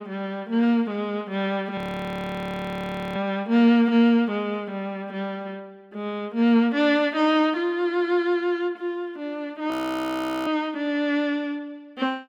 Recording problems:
audio freezing; at 2 s for 1.5 s and at 9.5 s for 1 s

